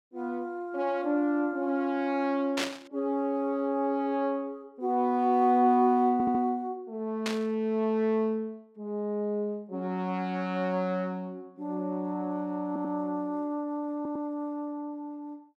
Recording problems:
burst of static; at 2.5 s and at 7.5 s; peak +2 dB vs average level
stutter; at 6 s, at 13 s and at 14 s

